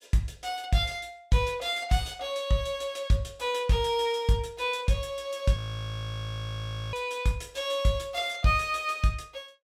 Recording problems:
frozen audio; at 5.5 s for 1.5 s

